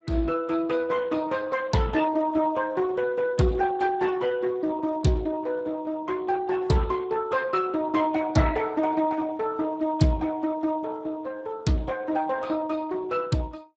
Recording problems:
lossy compression; Speex, log-spectral distance 3 dB, nothing above 7.3 kHz

